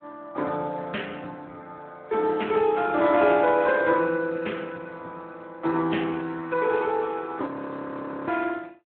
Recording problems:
telephone audio; 280 Hz to 3.1 kHz, Speex
audio freezing; at 7.5 s for 1 s

